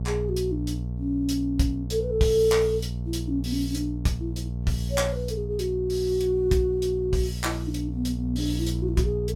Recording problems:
hum; 60 Hz, harmonics up to 480 Hz, SNR 5 dB

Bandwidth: 16.5 kHz